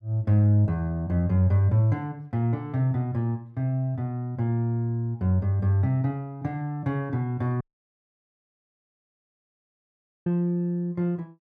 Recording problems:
dropout; at 7.5 s for 2.5 s

